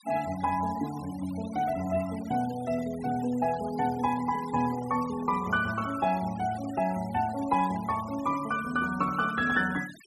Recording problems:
denoising artefacts; signal-to-artefact ratio 17 dB

